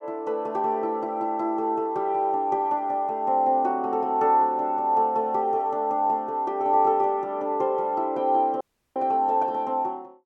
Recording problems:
audio cutting out; at 8.5 s

